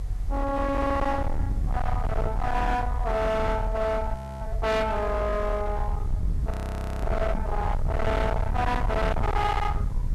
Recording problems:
distorted audio; hard clipping, uneven, signal-to-distortion ratio 6 dB
background hiss; slope -5 dB per octave, SNR 26 dB
rumble; below 110 Hz, SNR 2 dB
frozen audio; at 4 s and at 6.5 s for 0.5 s
knock on the microphone; at 7.5 s; peak -1 dB vs average level

